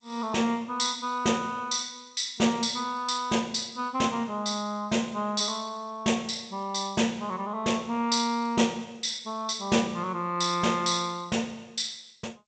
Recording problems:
lossy compression; G.722, log-spectral distance 5 dB, nothing above 8.2 kHz

